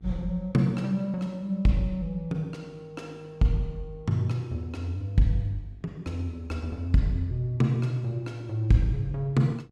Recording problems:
electrical hum; 50 Hz, harmonics up to 800 Hz, SNR 29 dB

